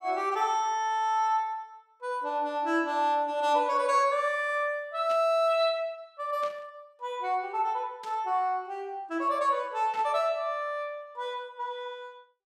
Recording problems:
burst of static; 4 times, first at 5 s; peak -13 dB vs average level

